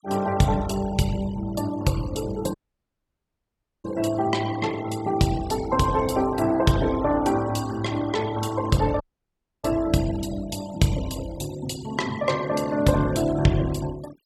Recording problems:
denoising artefacts; signal-to-artefact ratio 17 dB
audio cutting out; at 2.5 s for 1.5 s and at 9 s for 0.5 s

